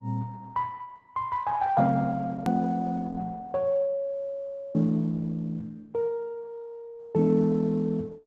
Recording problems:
lossy codec; Opus, log-spectral distance 2 dB, nothing above 13.1 kHz
click at an edit; at 2.5 s

